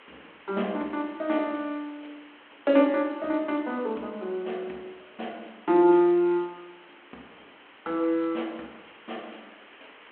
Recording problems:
phone line; 240 Hz to 3.3 kHz, G.726
hiss; SNR 24 dB

